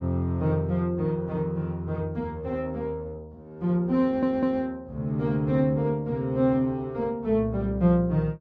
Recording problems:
stutter; at 4 s

